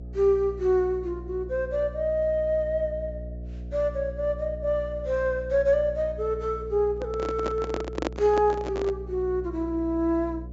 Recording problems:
treble cut off; nothing above 8 kHz
electrical hum; 60 Hz, harmonics up to 660 Hz, SNR 12 dB
microphone handling noise; from 7 to 9 s; peak +2 dB vs average level

